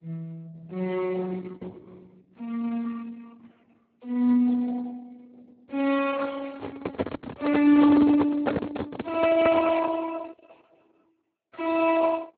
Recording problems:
lossy codec; Opus, then Speex, log-spectral distance 4 dB, nothing above 3.9 kHz
handling noise; from 6.5 to 10 s; peak +11 dB vs average level

